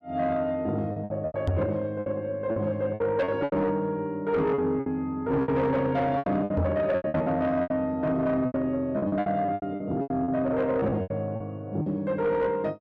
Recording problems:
distortion; soft clipping, signal-to-distortion ratio 12 dB
lost packets; 13% of the sound replaced, filled with repeated pitch periods
knock on the microphone; at 1.5 s and at 6.5 s; peak +4 dB vs average level

